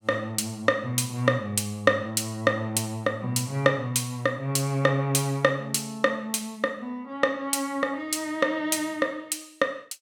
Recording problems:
none

